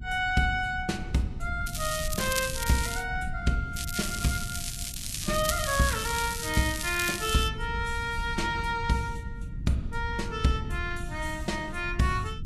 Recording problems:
lossy codec; Vorbis, log-spectral distance 6 dB, nothing above 12.3 kHz
rumble; below 110 Hz, SNR 9 dB
crackling; from 1.5 to 3 s and from 4 to 7.5 s; loose cable, SNR 4 dB

